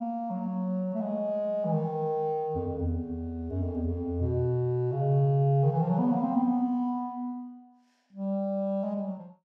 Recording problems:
none

